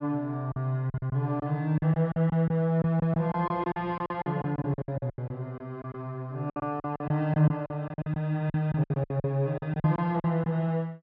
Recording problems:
low-pass filter; nothing above 5.6 kHz
lost packets; 16% of the sound replaced, filled with silence

